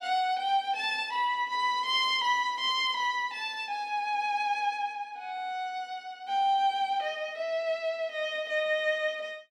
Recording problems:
none

